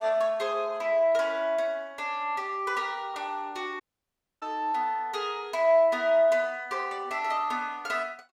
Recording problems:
dropout; at 4 s for 0.5 s

